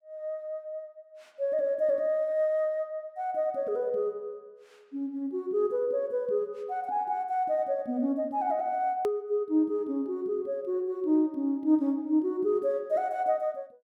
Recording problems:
edit click; at 9 s

